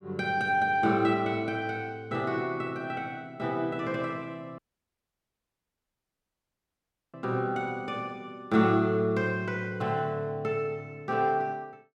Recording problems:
dropout; at 4.5 s for 2.5 s

